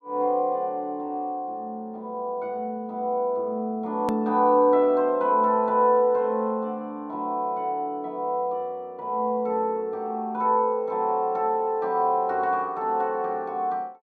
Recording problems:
edit click; at 4 s

